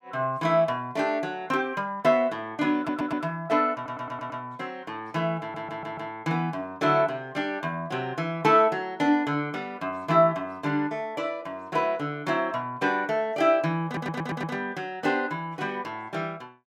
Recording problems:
stutter; 4 times, first at 3 s

